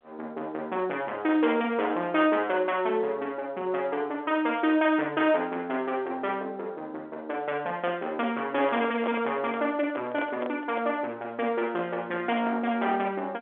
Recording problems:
phone line; 280 Hz to 3.7 kHz, G.711
distorted audio; soft clipping, signal-to-distortion ratio 14 dB
handling noise; from 8.5 to 11 s; peak 0 dB vs average level

